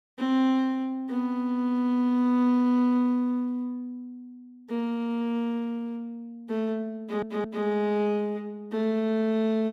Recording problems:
audio stuttering; at 7 s

